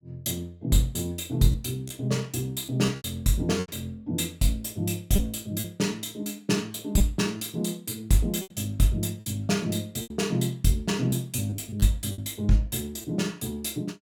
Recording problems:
lost packets; 6% of the sound replaced, filled with repeated pitch periods

